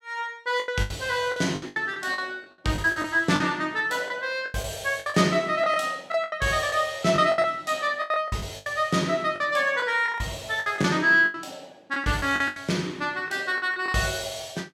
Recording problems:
lost packets; 13% of the sound replaced, filled with the last packet

